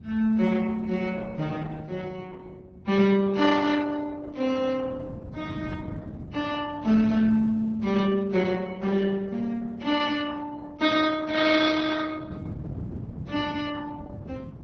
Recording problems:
lossy codec; Vorbis, then Opus, log-spectral distance 3 dB
wind on the microphone; below 210 Hz, SNR 15 dB

